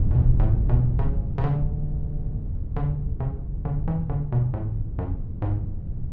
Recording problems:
wind on the microphone; below 110 Hz, SNR 1 dB

